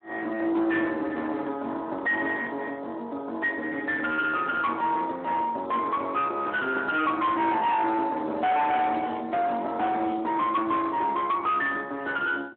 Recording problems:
telephone audio; 240 Hz to 3.6 kHz, Speex
distortion; soft clipping, signal-to-distortion ratio 8 dB

